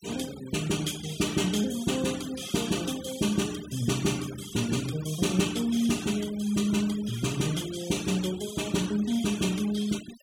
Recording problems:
denoising artefacts; signal-to-artefact ratio 14 dB

